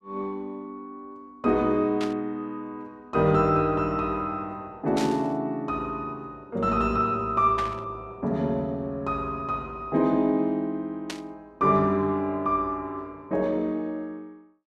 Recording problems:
burst of static; 4 times, first at 2 s; peak -4 dB vs average level

